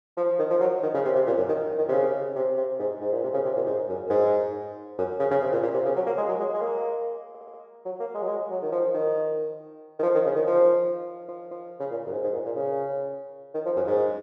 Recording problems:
stutter; at 7.5 s and at 11 s

